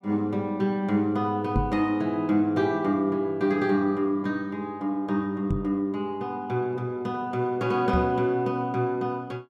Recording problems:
microphone thump; at 1.5 s, at 5.5 s and at 8 s; peak +4 dB vs average level

